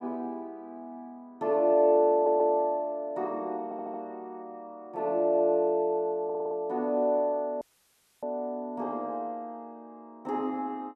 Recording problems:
stutter; at 2 s, at 3.5 s and at 6 s
dropout; at 7.5 s for 0.5 s

